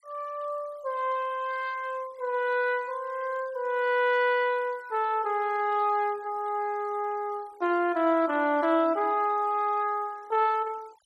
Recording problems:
noise reduction artefacts; signal-to-artefact ratio 26 dB

